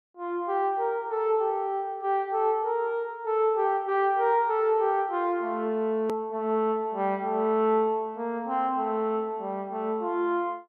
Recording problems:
edit click; at 6 s

